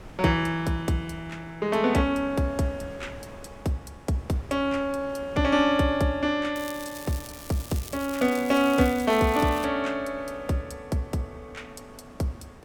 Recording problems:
wind noise; below 890 Hz, SNR 21 dB
crackle; from 6.5 to 9.5 s; loose cable, SNR 15 dB

